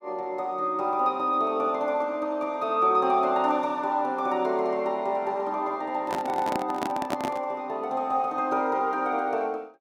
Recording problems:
handling noise; from 6 to 7.5 s; peak 0 dB vs average level

